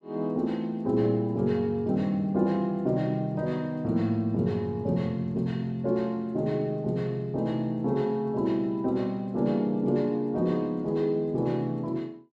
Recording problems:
none

